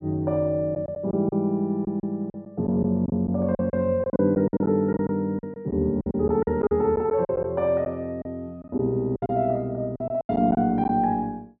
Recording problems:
lost packets; 11% of the sound replaced, filled with silence

